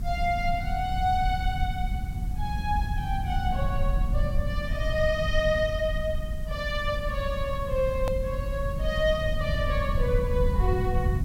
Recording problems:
hiss; slope -3 dB per octave, SNR 24 dB
low-frequency rumble; below 98 Hz, SNR 1 dB
edit click; at 8 s

